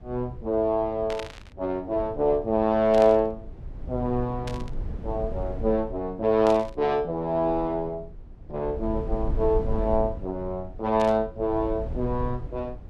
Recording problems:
low-frequency rumble; below 84 Hz, SNR 12 dB
static burst; 5 times, first at 1 s; peak -7 dB vs average level

